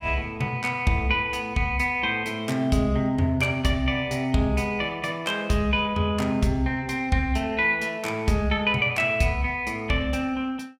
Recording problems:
none

